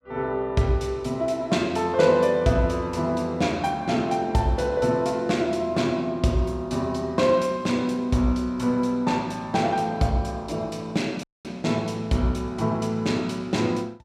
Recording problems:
audio cutting out; at 11 s

